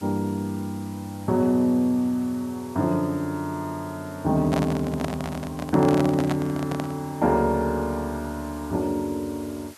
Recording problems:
hiss; SNR 22 dB
microphone handling noise; from 4.5 to 7 s; peak +1 dB vs average level

